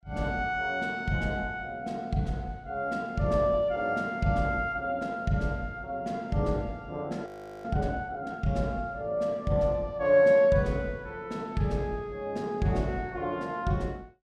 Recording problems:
frozen audio; at 7.5 s

